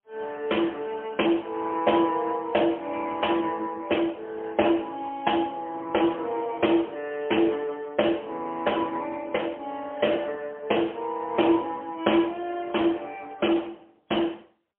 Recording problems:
telephone audio; 240 Hz to 3.3 kHz, AMR-NB, then MP3

